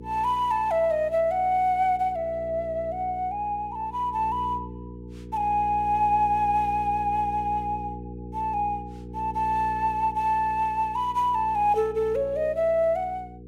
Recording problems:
electrical hum; 60 Hz, harmonics up to 480 Hz, SNR 15 dB

